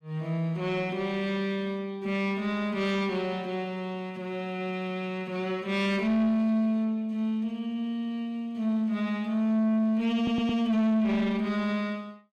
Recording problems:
distorted audio; soft clipping, signal-to-distortion ratio 11 dB
stutter; at 10 s

